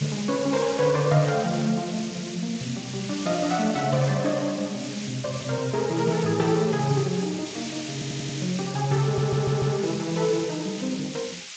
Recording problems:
lossy compression; Speex, log-spectral distance 16 dB
hiss; SNR 11 dB
stutter; at 8 s and at 9 s

